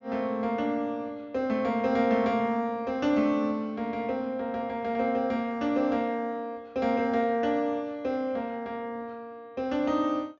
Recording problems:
treble cut off; nothing above 6.9 kHz

